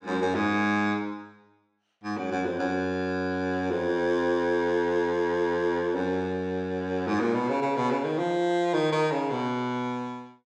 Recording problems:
none

